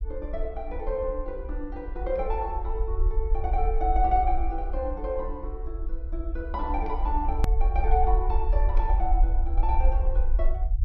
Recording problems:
low-pass filter; nothing above 6.2 kHz
low-frequency rumble; below 52 Hz, SNR -2 dB
click at an edit; at 7.5 s

